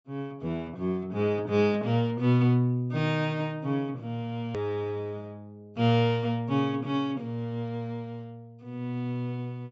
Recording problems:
treble missing; nothing above 8 kHz
hard cut with a click; at 4.5 s

